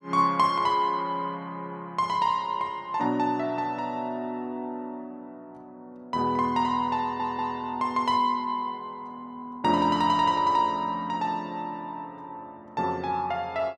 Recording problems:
stutter; at 7 s

